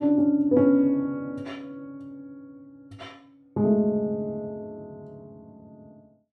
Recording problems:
none

